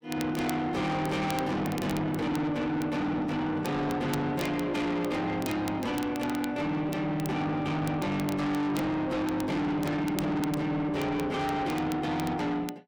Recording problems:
distorted audio; soft clipping, signal-to-distortion ratio 7 dB
crackling; vinyl, SNR 17 dB

